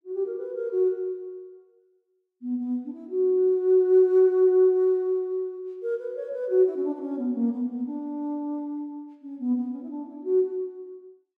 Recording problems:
none

